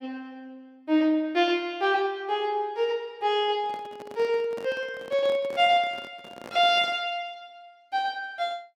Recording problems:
handling noise; from 3.5 to 7 s; peak -11 dB vs average level

